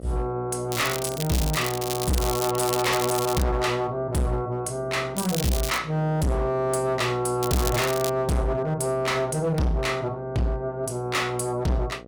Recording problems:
distorted audio; hard clipping, signal-to-distortion ratio 6 dB
hum; 60 Hz, harmonics up to 1.3 kHz, SNR 18 dB
crackling; from 0.5 to 3.5 s, at 5 s and at 7.5 s; loose cable, SNR 6 dB

